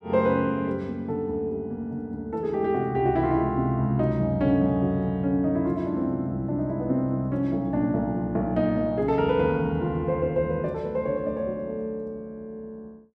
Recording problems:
none

